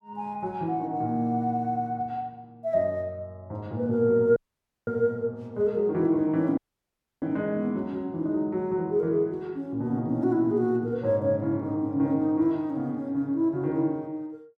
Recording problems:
dropout; at 4.5 s for 0.5 s and at 6.5 s for 0.5 s

